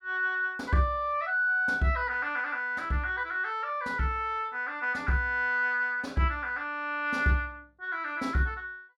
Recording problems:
none

